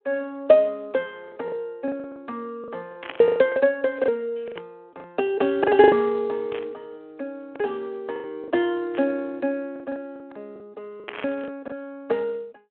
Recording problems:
phone line; 220 Hz to 3.7 kHz, Speex
lost packets; 10% of the sound replaced, filled with the last packet
static burst; 5 times, first at 3 s; peak -5 dB vs average level

